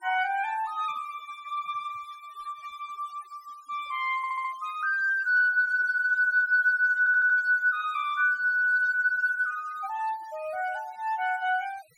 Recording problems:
denoising artefacts; signal-to-artefact ratio 25 dB
audio stuttering; at 4 s and at 7 s

